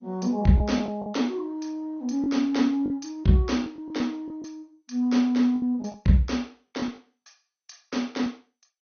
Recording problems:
lossy codec; MP2, log-spectral distance 3 dB, nothing above 6.3 kHz
packet loss; 7% of the sound replaced, filled with the last packet

